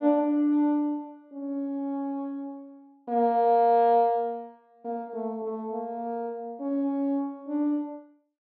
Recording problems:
none

